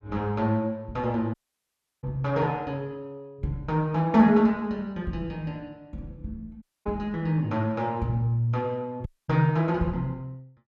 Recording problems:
audio cutting out; at 1.5 s for 0.5 s, at 6.5 s and at 9 s

